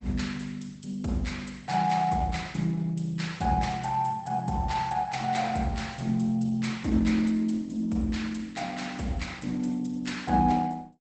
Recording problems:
lossy codec; Opus, log-spectral distance 4 dB, nothing above 8.2 kHz

